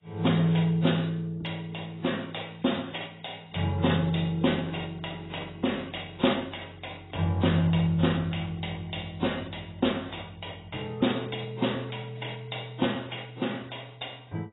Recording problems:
lossy compression; AAC, then AAC, log-spectral distance 8 dB, nothing above 3.8 kHz

